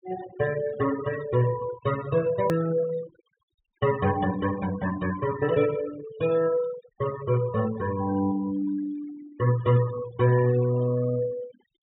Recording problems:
treble cut off; nothing above 4 kHz
denoising artefacts; signal-to-artefact ratio 15 dB
click at an edit; at 2.5 s

